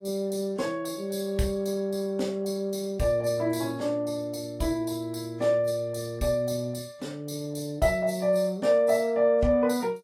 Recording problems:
lossy codec; AAC, log-spectral distance 2 dB, nothing above 14.7 kHz

